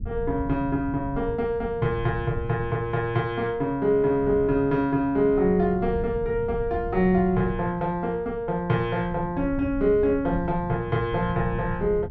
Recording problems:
rumble; below 140 Hz, SNR 12 dB

